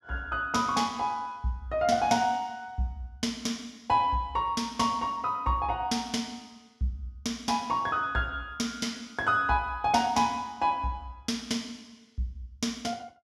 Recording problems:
none

